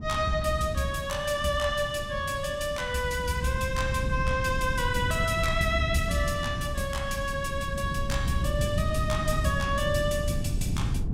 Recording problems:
wind noise; below 150 Hz, SNR 4 dB

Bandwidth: 16.5 kHz